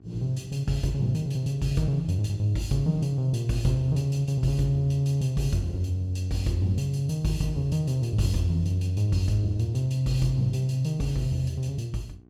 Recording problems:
electrical hum; 60 Hz, harmonics up to 1.1 kHz, SNR 28 dB

